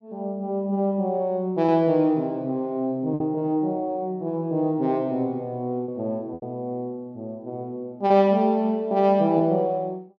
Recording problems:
packet loss; 2% of the sound replaced, filled with repeated pitch periods

